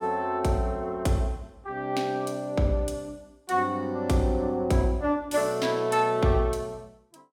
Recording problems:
none

